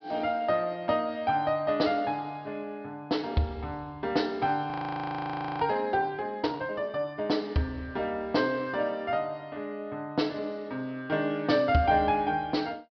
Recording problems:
treble cut off; nothing above 5.5 kHz
audio freezing; at 4.5 s for 1 s

